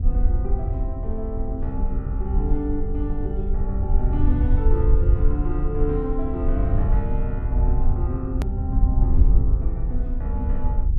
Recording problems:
rumble; below 64 Hz, SNR -6 dB
hard cut with a click; at 8.5 s

